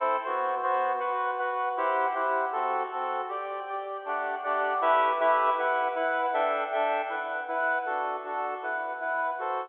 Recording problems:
telephone audio; 300 Hz to 3.6 kHz, G.711

